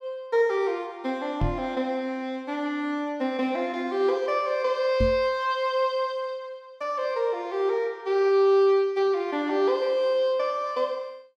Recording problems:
knock on the microphone; at 1.5 s and at 5 s; peak +2 dB vs average level

